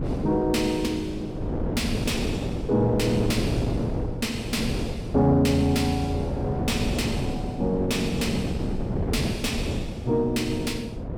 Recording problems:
distorted audio; soft clipping, signal-to-distortion ratio 10 dB
wind on the microphone; below 360 Hz, SNR 4 dB

